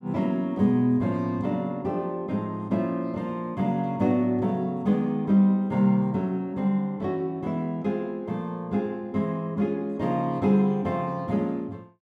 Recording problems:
none

